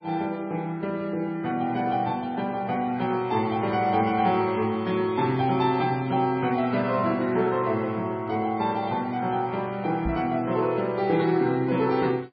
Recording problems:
lossy codec; MP3, log-spectral distance 2 dB, nothing above 4.6 kHz
microphone thump; at 10 s; peak -2 dB vs average level

